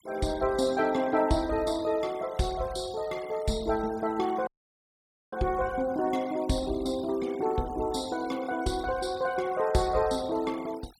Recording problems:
denoising artefacts; signal-to-artefact ratio 21 dB
audio cutting out; at 4.5 s for 1 s

